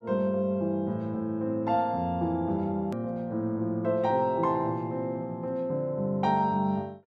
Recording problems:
edit click; at 3 s

